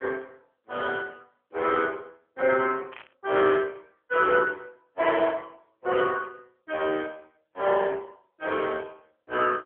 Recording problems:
telephone audio; 280 Hz to 3.3 kHz, AMR-NB
burst of static; at 3 s and at 6 s; peak -13 dB vs average level

